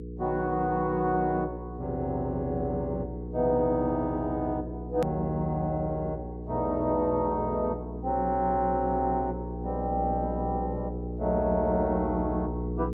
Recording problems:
hum; 60 Hz, harmonics up to 480 Hz, SNR 7 dB
hard cut with a click; at 5 s

